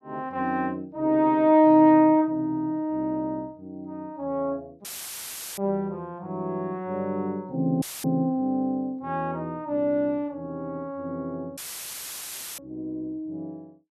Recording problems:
audio cutting out; at 5 s for 0.5 s, at 8 s and at 12 s for 1 s; filled with static

